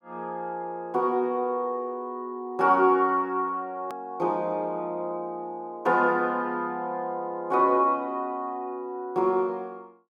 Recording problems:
edit click; at 4 s

